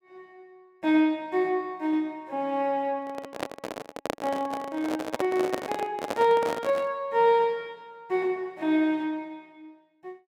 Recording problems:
handling noise; from 3 to 7 s; peak +1 dB vs average level

